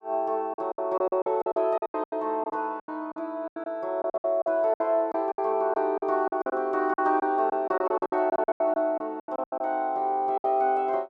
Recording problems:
packet loss; 17% of the sound replaced, filled with silence

